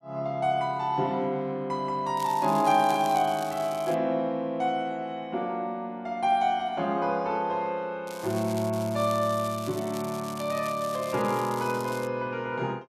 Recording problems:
crackle; from 2 to 4 s and from 8 to 12 s; loose cable, SNR 16 dB

